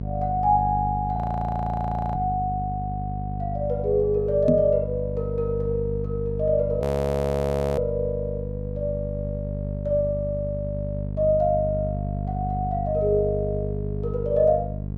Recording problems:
electrical hum; 50 Hz, harmonics up to 500 Hz, SNR 5 dB
frozen audio; at 1 s for 1 s and at 7 s for 1 s
microphone bump; at 4.5 s; peak +6 dB vs average level

